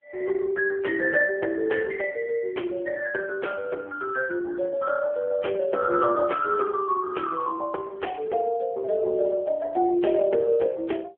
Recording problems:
telephone audio; 300 Hz to 3.3 kHz, AMR-NB

